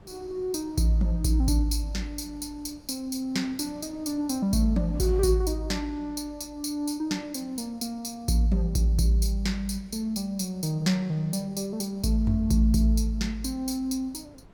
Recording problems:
wind on the microphone; below 380 Hz, SNR 25 dB

